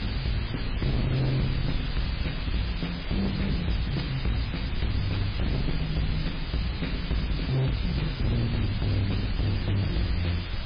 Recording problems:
codec artefacts; MP3, log-spectral distance 14 dB, nothing above 11.3 kHz
distortion; hard clipping, uneven, signal-to-distortion ratio 5 dB
hiss; SNR 9 dB
low-frequency rumble; below 110 Hz, SNR 7 dB

